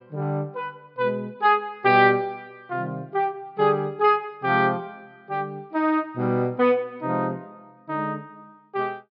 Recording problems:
low-pass filter; nothing above 5.5 kHz

